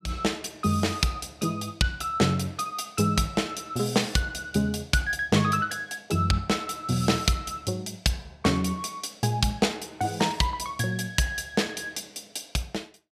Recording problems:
none

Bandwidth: 15 kHz